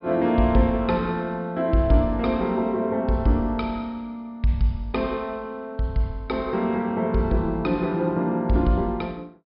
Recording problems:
treble cut off; nothing above 5.2 kHz

